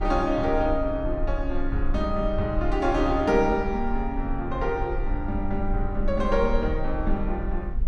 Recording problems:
low-frequency rumble; below 50 Hz, SNR 6 dB

